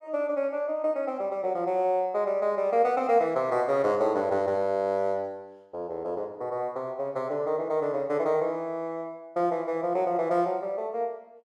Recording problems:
none

